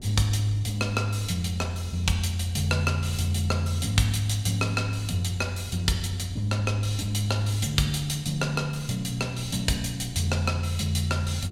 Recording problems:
wind noise; below 210 Hz, SNR 18 dB

